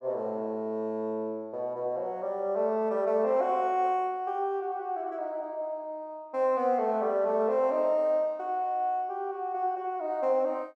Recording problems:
none

